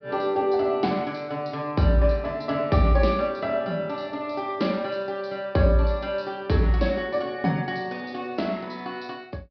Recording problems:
treble cut off; nothing above 5.5 kHz

